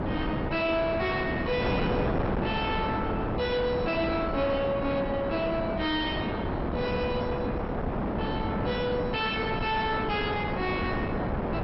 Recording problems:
codec artefacts; MP2, log-spectral distance 2 dB, nothing above 5.5 kHz
distorted audio; soft clipping, signal-to-distortion ratio 10 dB
wind on the microphone; below 750 Hz, SNR 1 dB

